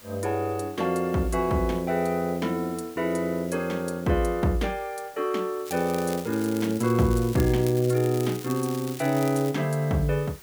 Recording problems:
background hiss; slope -2 dB per octave, SNR 21 dB
crackling; from 5.5 to 9.5 s; loose cable, SNR 15 dB

